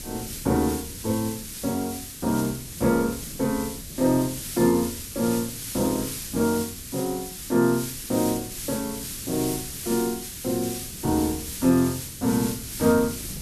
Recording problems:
background hiss; slope +5 dB per octave, SNR 8 dB
wind on the microphone; below 250 Hz, SNR 18 dB

